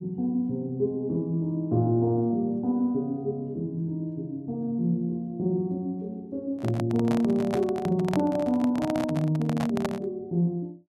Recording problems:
microphone handling noise; from 6.5 to 10 s; peak +1 dB vs average level

